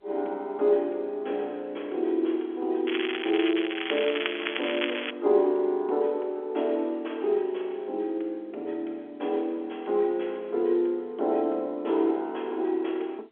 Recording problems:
telephone audio; 260 Hz to 3.5 kHz, G.711
crackling; from 3 to 5 s; loose cable, SNR 4 dB

